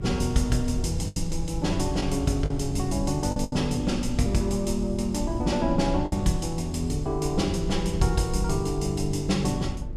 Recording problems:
hum; 50 Hz, harmonics up to 550 Hz, SNR 15 dB
low-frequency rumble; below 94 Hz, SNR 8 dB
lost packets; 3% of the sound replaced, filled with the last packet

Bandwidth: 14.5 kHz